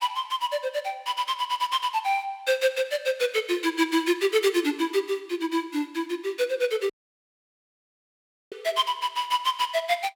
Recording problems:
dropout; at 7 s for 1.5 s

